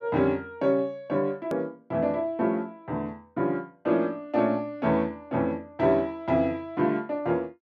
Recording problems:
click at an edit; at 1.5 s

